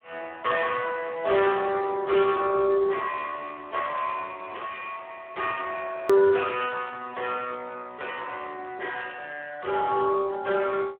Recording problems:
telephone audio; 280 Hz to 3.5 kHz, Speex
edit click; at 6 s

